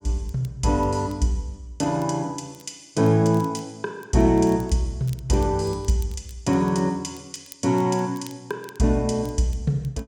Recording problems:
crackle; vinyl, SNR 27 dB

